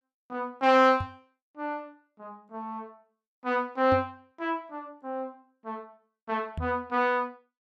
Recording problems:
knock on the microphone; at 1 s, at 4 s and at 6.5 s; peak -1 dB vs average level

